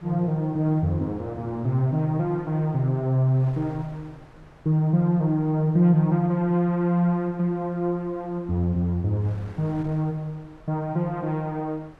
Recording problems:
wind on the microphone; below 1 kHz, SNR 26 dB

